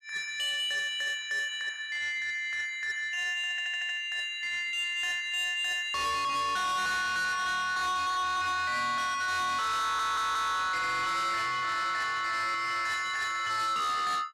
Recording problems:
distorted audio; soft clipping, signal-to-distortion ratio 8 dB
audio stuttering; at 3.5 s and at 10 s

